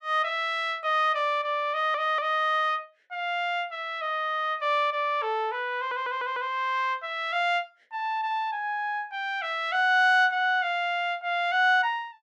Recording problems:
stutter; at 1.5 s and at 6 s

